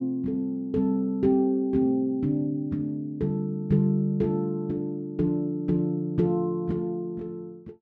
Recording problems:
none

